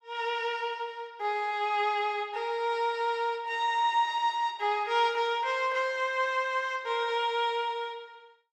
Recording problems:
none

